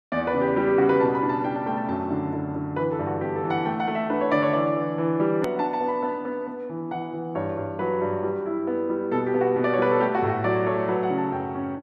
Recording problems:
click at an edit; at 5.5 s

